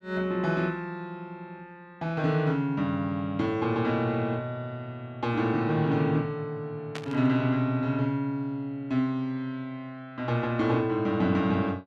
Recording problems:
burst of static; at 7 s; peak -5 dB vs average level

